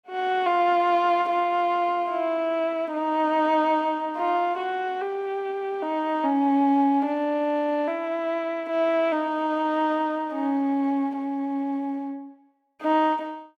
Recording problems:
none

